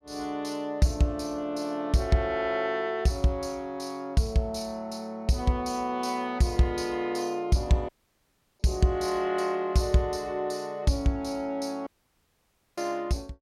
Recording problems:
audio cutting out; at 8 s for 0.5 s and at 12 s for 1 s

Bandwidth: 16.5 kHz